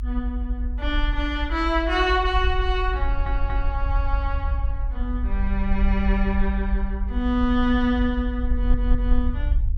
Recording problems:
rumble; below 56 Hz, SNR 1 dB
audio stuttering; at 3 s and at 8.5 s

